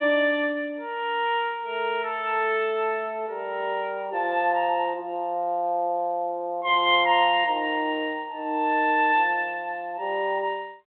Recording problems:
phone line; 240 Hz to 3.7 kHz, G.726

